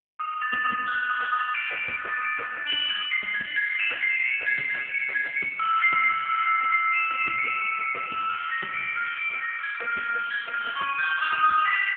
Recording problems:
telephone audio; 410 Hz to 3.3 kHz, AMR-NB

